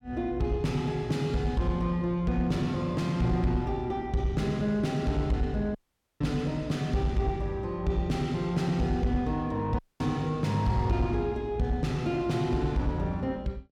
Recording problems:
distortion; soft clipping, signal-to-distortion ratio 10 dB
audio cutting out; at 6 s and at 10 s

